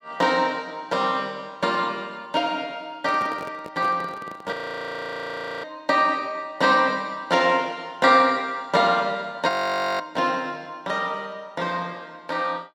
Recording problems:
handling noise; from 3 to 4.5 s; peak -9 dB vs average level
audio freezing; at 4.5 s for 1 s and at 9.5 s for 0.5 s

